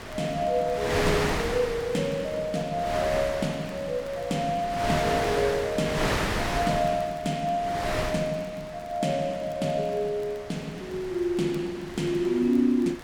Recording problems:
wind noise; below 2.2 kHz, SNR 4 dB
crackling; vinyl, SNR 30 dB

